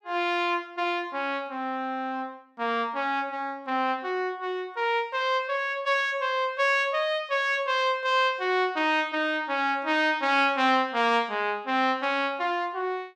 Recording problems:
none

